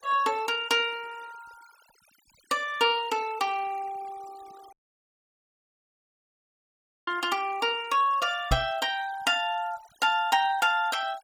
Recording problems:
noise reduction artefacts; signal-to-artefact ratio 21 dB
audio cutting out; at 4.5 s for 2.5 s
knock on the microphone; at 8.5 s; peak +3 dB vs average level

